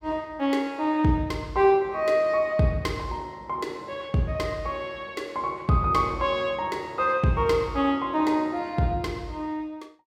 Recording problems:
none

